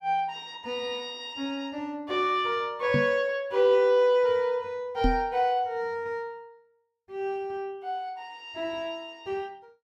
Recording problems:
knock on the microphone; at 3 s and at 5 s; peak +4 dB vs average level

